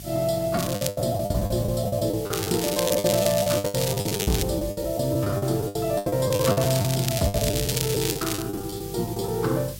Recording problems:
hum; 50 Hz, harmonics up to 600 Hz, SNR 17 dB
hiss; slope +6 dB per octave, SNR 15 dB
packet loss; 19% of the sound replaced, filled with the last packet
crackle; at 0.5 s, from 2.5 to 4.5 s and from 6.5 to 8.5 s; loose cable, SNR 5 dB

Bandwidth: 16 kHz